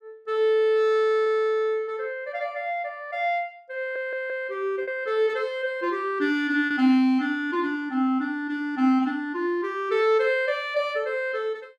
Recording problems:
packet loss; 1% of the sound replaced, filled with repeated pitch periods
audio stuttering; at 4 s

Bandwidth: 14.5 kHz